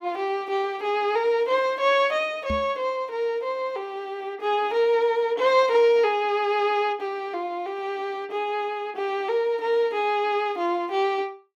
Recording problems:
microphone thump; at 2.5 s; peak -3 dB vs average level

